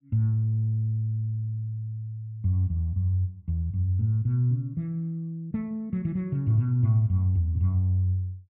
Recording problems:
none

